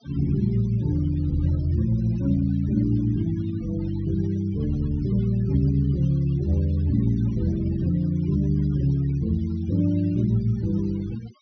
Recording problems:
treble missing; nothing above 6.1 kHz
denoising artefacts; signal-to-artefact ratio 23 dB

